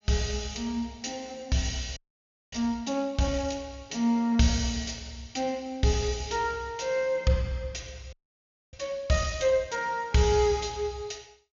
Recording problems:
low-pass filter; nothing above 7.2 kHz
audio freezing; at 2 s for 0.5 s and at 8 s for 0.5 s

